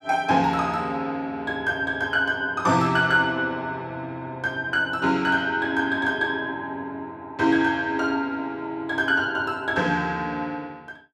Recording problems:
none

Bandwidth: 13 kHz